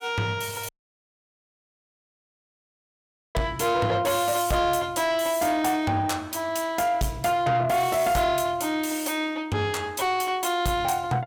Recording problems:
distorted audio; soft clipping, signal-to-distortion ratio 11 dB
audio cutting out; at 0.5 s for 2.5 s

